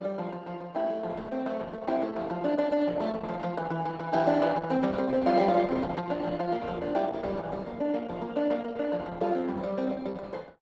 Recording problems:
lossy compression; Opus, log-spectral distance 3 dB, nothing above 7.6 kHz

